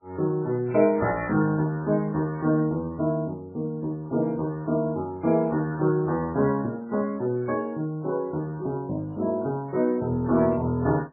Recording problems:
codec artefacts; MP3, then AAC, log-spectral distance 2 dB, nothing above 2.4 kHz

